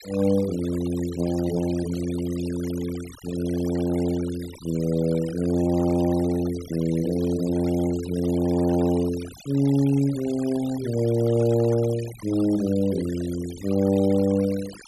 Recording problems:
noise reduction artefacts; signal-to-artefact ratio 18 dB

